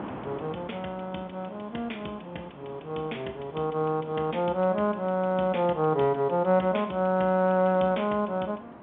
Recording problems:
phone line; 260 Hz to 3.4 kHz, G.711
wind on the microphone; below 990 Hz, SNR 18 dB

